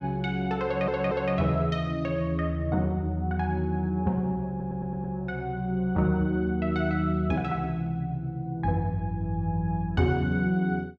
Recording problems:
stutter; at 0.5 s and at 4.5 s

